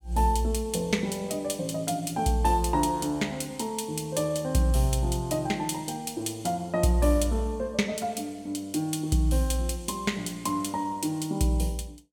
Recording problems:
none

